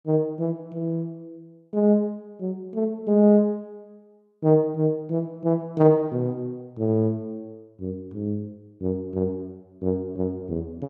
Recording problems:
none

